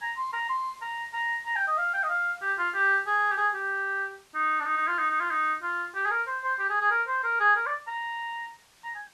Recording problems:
background hiss; slope 0 dB per octave, SNR 28 dB

